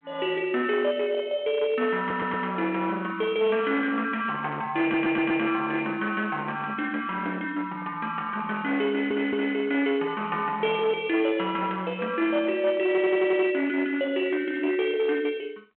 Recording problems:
phone line; 240 Hz to 3.4 kHz, G.726
distorted audio; hard clipping, uneven, signal-to-distortion ratio 13 dB
audio stuttering; 4 times, first at 2 s

